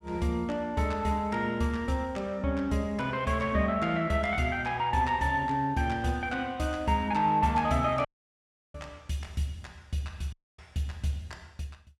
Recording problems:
audio cutting out; at 8 s for 0.5 s and at 10 s

